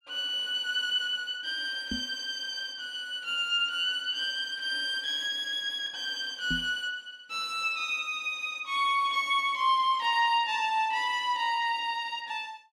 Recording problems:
microphone bump; at 2 s and at 6.5 s; peak -2 dB vs average level

